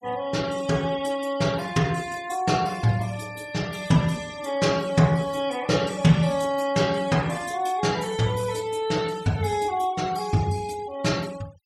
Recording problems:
denoising artefacts; signal-to-artefact ratio 20 dB

